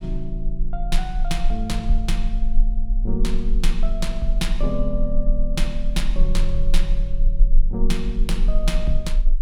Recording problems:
rumble; below 32 Hz, strongest tone 20 Hz, SNR -3 dB

